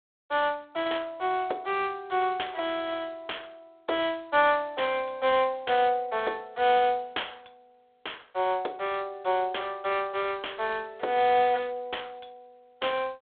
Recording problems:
telephone audio; 340 Hz to 3.8 kHz, G.726

